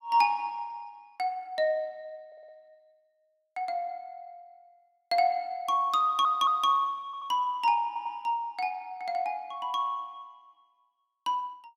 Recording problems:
stutter; 4 times, first at 2.5 s

